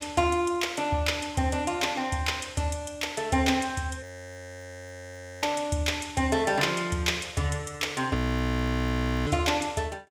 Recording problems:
audio freezing; at 4 s for 1.5 s and at 8 s for 1 s

